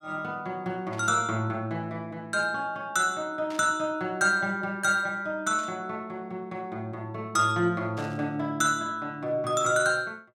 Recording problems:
burst of static; 4 times, first at 1 s; peak -13 dB vs average level

